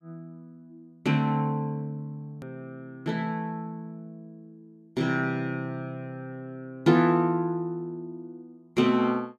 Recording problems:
click at an edit; at 2.5 s

